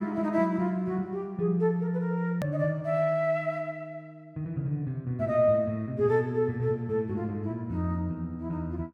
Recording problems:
click at an edit; at 2.5 s

